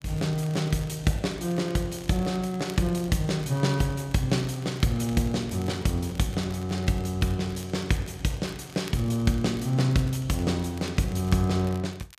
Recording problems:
crackle; vinyl, SNR 23 dB

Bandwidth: 14.5 kHz